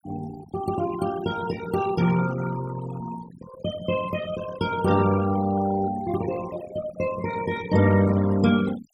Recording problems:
noise reduction artefacts; signal-to-artefact ratio 14 dB

